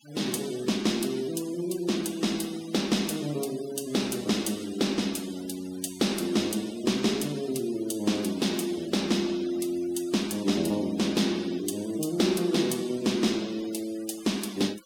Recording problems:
denoising artefacts; signal-to-artefact ratio 17 dB

